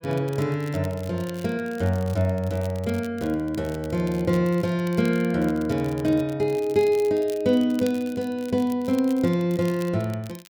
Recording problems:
crackle; vinyl, SNR 22 dB

